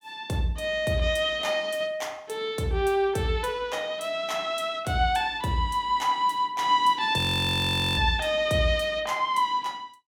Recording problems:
frozen audio; at 7 s for 1 s

